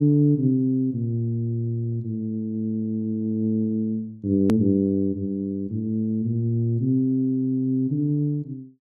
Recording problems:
edit click; at 4.5 s

